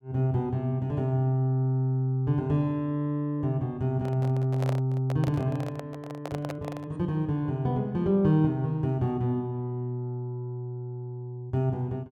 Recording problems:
handling noise; from 4 to 7 s; peak -3 dB vs average level

